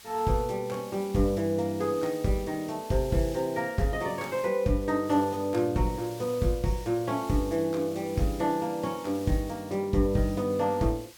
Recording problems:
hiss; slope +1 dB per octave, SNR 19 dB

